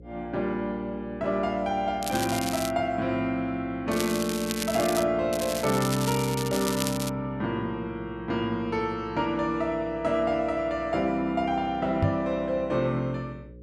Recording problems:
hum; 60 Hz, harmonics up to 540 Hz, SNR 19 dB
crackle; at 2 s, from 4 to 5 s and from 5.5 to 7 s; loose cable, SNR 7 dB
microphone thump; at 12 s; peak +6 dB vs average level

